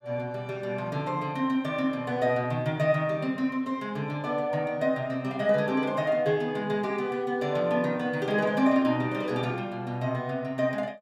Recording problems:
none

